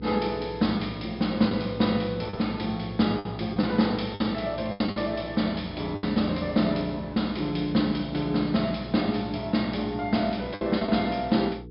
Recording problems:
treble cut off; nothing above 5.3 kHz
electrical hum; 60 Hz, harmonics up to 480 Hz, SNR 16 dB
packet loss; 5% of the sound replaced, filled with the last packet

